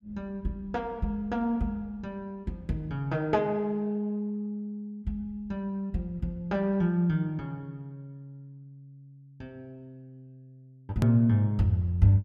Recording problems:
click at an edit; at 11 s

